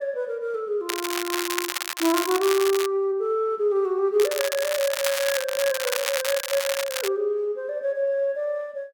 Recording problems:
crackling; from 1 to 3 s and from 4 to 7 s; loose cable, SNR 3 dB

